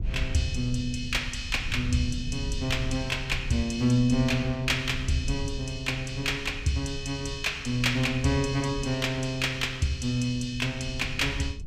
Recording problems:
rumble; below 94 Hz, SNR 10 dB

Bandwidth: 15.5 kHz